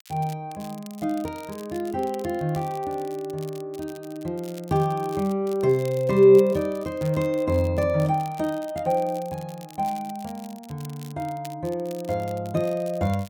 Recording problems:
crackle; vinyl, SNR 23 dB

